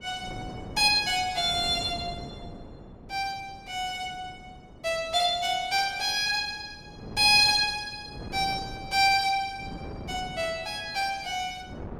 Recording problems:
wind noise; below 440 Hz, SNR 18 dB

